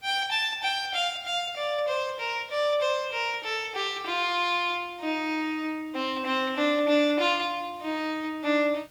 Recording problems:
hiss; slope -2 dB per octave, SNR 30 dB

